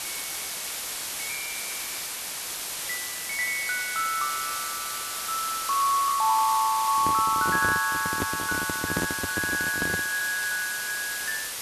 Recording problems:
background hiss; slope +1 dB per octave, SNR 4 dB
handling noise; from 7 to 10 s; peak +2 dB vs average level

